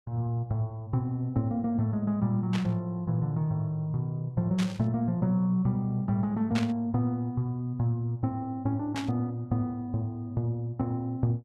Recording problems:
burst of static; 4 times, first at 2.5 s; peak -2 dB vs average level

